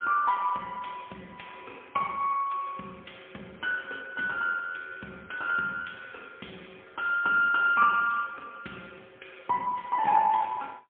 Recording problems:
phone line; 300 Hz to 3.3 kHz, AMR-NB, then MP3

